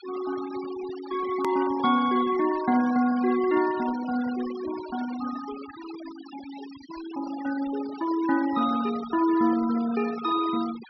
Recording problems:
treble cut off; nothing above 5.8 kHz
denoising artefacts; signal-to-artefact ratio 16 dB
hard cut with a click; at 1.5 s

